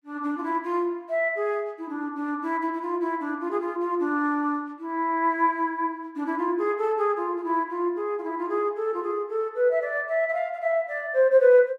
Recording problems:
none

